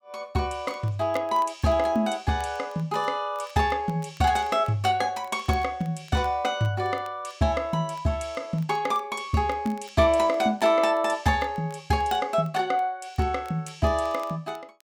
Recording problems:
crackle; vinyl, SNR 29 dB

